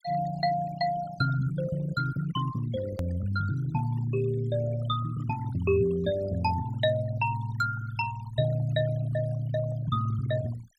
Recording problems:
denoising artefacts; signal-to-artefact ratio 15 dB
hard cut with a click; at 3 s

